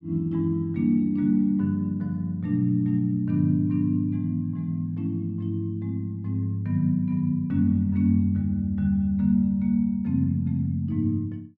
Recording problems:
none

